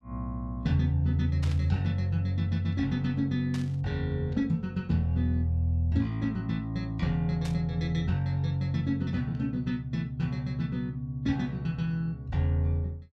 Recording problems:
static burst; at 1.5 s, at 3.5 s and at 7.5 s; peak -9 dB vs average level

